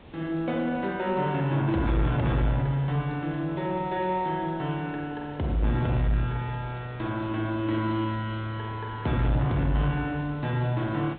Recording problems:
treble cut off; nothing above 4 kHz
distorted audio; soft clipping, signal-to-distortion ratio 11 dB
background hiss; SNR 19 dB

